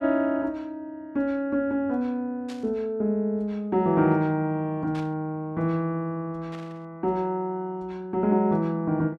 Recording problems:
burst of static; at 2.5 s, at 5 s and at 6.5 s; peak -13 dB vs average level

